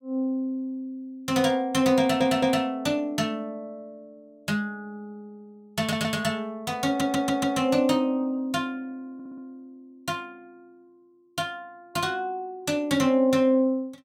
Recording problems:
stutter; 4 times, first at 2 s

